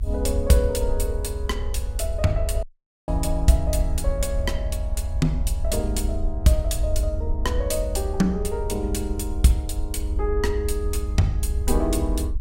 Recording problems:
low-frequency rumble; below 68 Hz, SNR 2 dB
audio cutting out; at 2.5 s

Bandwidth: 16 kHz